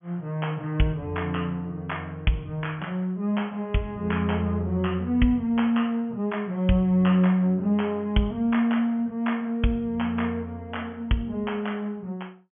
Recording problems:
treble cut off; nothing above 3.3 kHz

